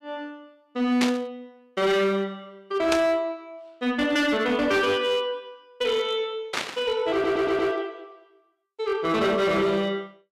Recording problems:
distortion; hard clipping, signal-to-distortion ratio 10 dB
burst of static; at 1 s, at 3 s and at 6.5 s; peak +3 dB vs average level
stutter; at 7 s

